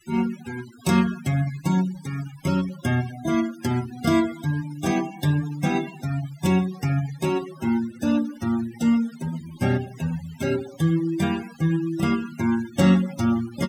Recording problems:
denoising artefacts; signal-to-artefact ratio 16 dB

